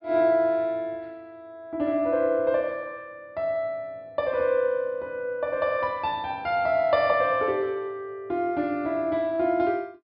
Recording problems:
treble missing; nothing above 5.4 kHz

